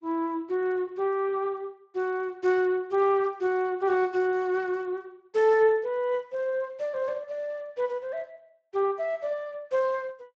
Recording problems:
lossy compression; Opus, then Speex, log-spectral distance 2 dB

